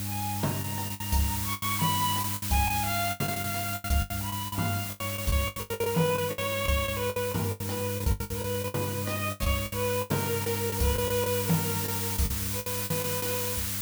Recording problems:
hum; 50 Hz, harmonics up to 600 Hz, SNR 6 dB
background hiss; slope +3 dB per octave, SNR 1 dB
packet loss; 16% of the sound replaced, filled with the last packet

